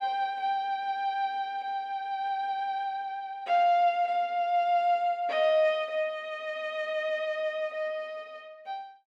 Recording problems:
none

